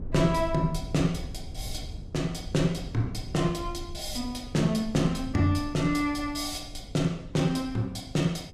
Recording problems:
low-frequency rumble; below 98 Hz, SNR 13 dB

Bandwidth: 15.5 kHz